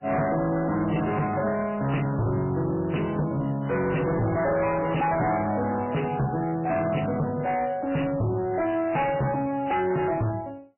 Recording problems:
lossy compression; MP3, log-spectral distance 6 dB, nothing above 2.9 kHz
distortion; hard clipping, signal-to-distortion ratio 6 dB

